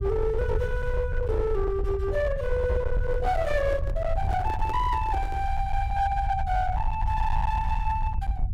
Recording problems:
distorted audio; hard clipping, signal-to-distortion ratio 11 dB
low-frequency rumble; below 82 Hz, SNR 3 dB
handling noise; from 3 to 5.5 s; peak -6 dB vs average level

